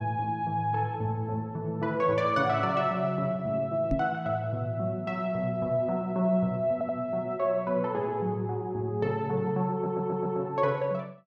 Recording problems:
knock on the microphone; at 4 s; peak +3 dB vs average level
audio stuttering; at 6.5 s and at 9.5 s

